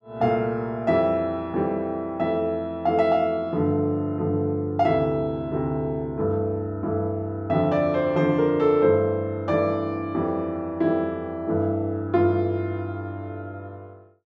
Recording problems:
none

